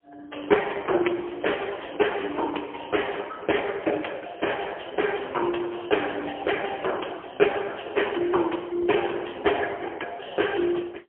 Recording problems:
telephone audio; 300 Hz to 3.3 kHz, AMR-NB, then MP3

